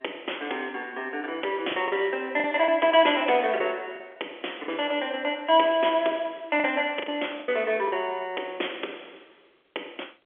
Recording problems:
phone line; 320 Hz to 3.4 kHz, G.711
packet loss; 5% of the sound replaced, filled with the last packet

